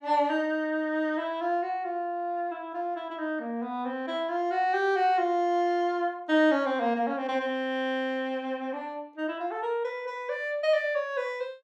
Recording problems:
none

